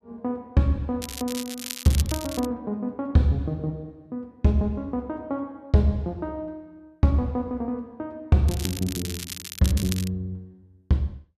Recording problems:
crackling; from 1 to 2.5 s and from 8.5 to 10 s; loose cable, SNR 9 dB

